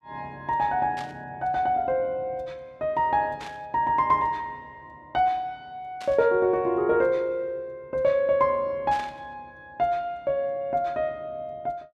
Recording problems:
burst of static; 4 times, first at 1 s; peak -11 dB vs average level

